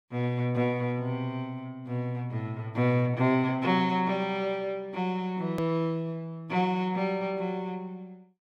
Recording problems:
hard cut with a click; at 5.5 s

